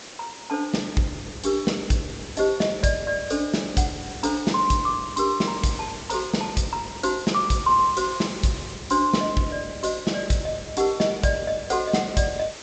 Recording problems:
treble missing; nothing above 8 kHz
background hiss; slope -2 dB per octave, SNR 15 dB

